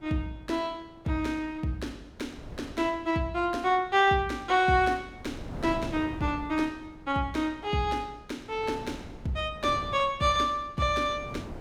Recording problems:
wind noise; below 410 Hz, SNR 17 dB

